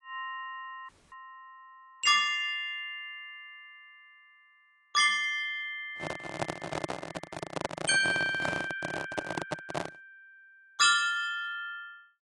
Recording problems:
lossy compression; AAC, log-spectral distance 2 dB
dropout; at 1 s
handling noise; from 6 to 10 s; peak +1 dB vs average level

